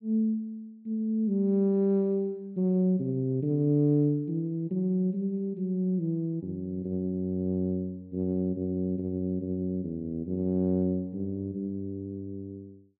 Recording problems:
low-pass filter; nothing above 4.3 kHz

